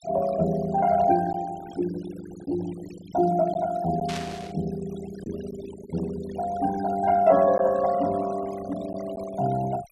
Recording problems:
noise reduction artefacts; signal-to-artefact ratio 16 dB
lost packets; 1% of the sound replaced, filled with silence
static burst; at 4 s; peak -5 dB vs average level

